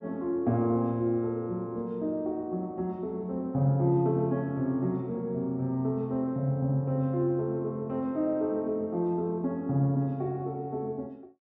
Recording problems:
none

